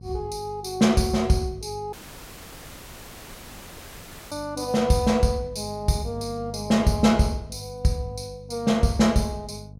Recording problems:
electrical hum; 50 Hz, harmonics up to 500 Hz, SNR 18 dB
audio cutting out; at 2 s for 2.5 s

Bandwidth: 16 kHz